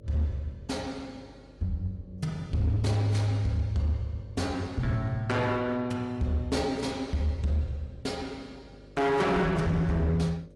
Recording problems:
lossy codec; AAC, log-spectral distance 2 dB, nothing above 11.3 kHz
distortion; hard clipping, signal-to-distortion ratio 11 dB
electrical hum; 50 Hz, harmonics up to 600 Hz, SNR 25 dB

